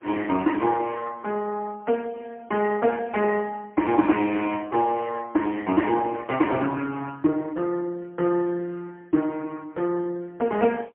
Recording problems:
telephone audio; 240 Hz to 3.2 kHz, AMR-NB, then MP3

